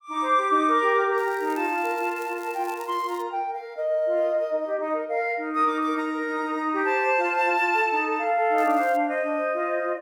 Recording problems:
crackle; from 1 to 3 s and at 8.5 s; loose cable, SNR 24 dB

